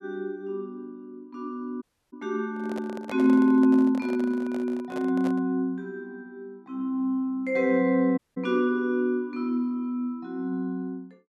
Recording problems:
audio cutting out; at 2 s and at 8 s
microphone handling noise; from 2.5 to 5.5 s; peak -8 dB vs average level

